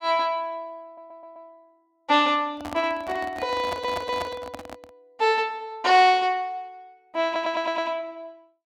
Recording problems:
audio stuttering; at 1 s, at 3.5 s and at 7.5 s
handling noise; from 2.5 to 5 s; peak -5 dB vs average level

